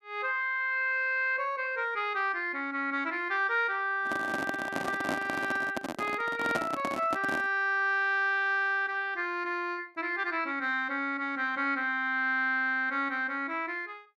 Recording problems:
microphone handling noise; from 4 to 7.5 s; peak +1 dB vs average level

